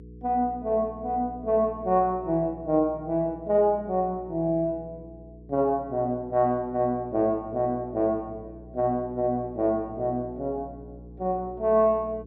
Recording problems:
hum; 60 Hz, harmonics up to 480 Hz, SNR 20 dB

